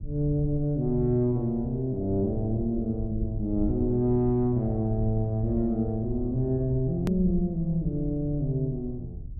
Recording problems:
low-frequency rumble; below 80 Hz, SNR 11 dB
edit click; at 7 s

